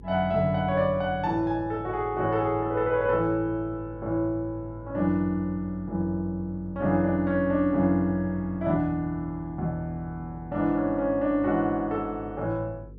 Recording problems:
hum; 50 Hz, harmonics up to 500 Hz, SNR 19 dB

